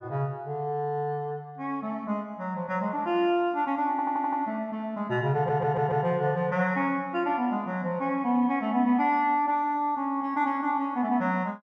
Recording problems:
audio stuttering; at 4 s and at 5.5 s

